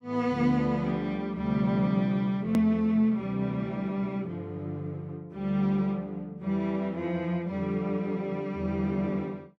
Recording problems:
hard cut with a click; at 2.5 s

